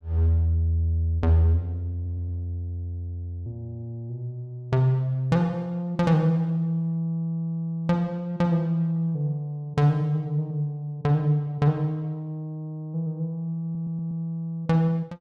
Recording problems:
stutter; at 2 s and at 14 s

